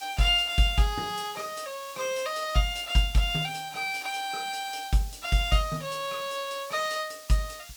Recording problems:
background hiss; slope +3 dB per octave, SNR 17 dB

